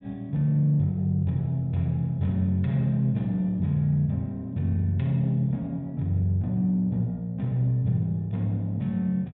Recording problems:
none

